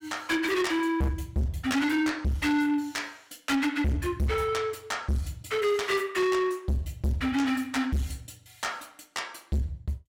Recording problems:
distorted audio; soft clipping, signal-to-distortion ratio 7 dB

